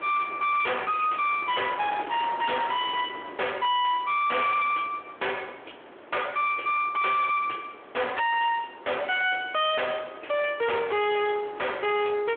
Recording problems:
phone line; 300 Hz to 3.5 kHz, Speex
distortion; soft clipping, signal-to-distortion ratio 4 dB
wind on the microphone; below 2 kHz, SNR 16 dB

